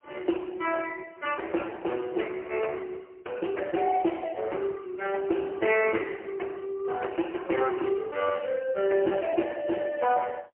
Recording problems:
telephone audio; 300 Hz to 3.1 kHz, AMR-NB, then MP3

